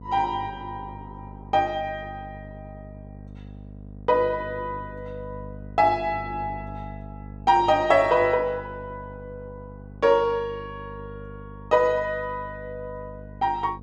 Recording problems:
hum; 50 Hz, harmonics up to 700 Hz, SNR 17 dB

